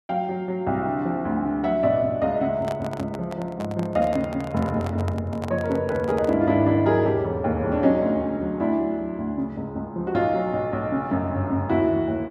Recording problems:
microphone handling noise; from 2.5 to 6.5 s; peak -6 dB vs average level

